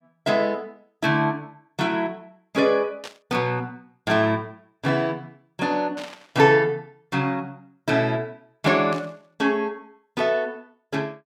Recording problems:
static burst; at 3 s, at 6 s and at 9 s; peak -9 dB vs average level

